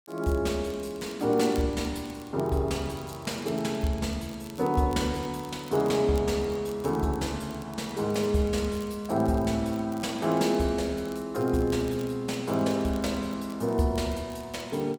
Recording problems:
crackling; vinyl, SNR 24 dB

